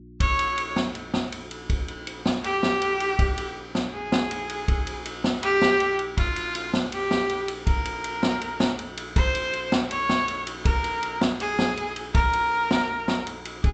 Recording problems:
treble cut off; nothing above 8 kHz
electrical hum; 60 Hz, harmonics up to 360 Hz, SNR 22 dB

